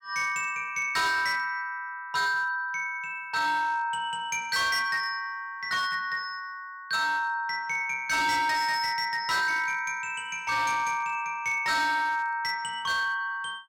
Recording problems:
distortion; hard clipping, signal-to-distortion ratio 12 dB

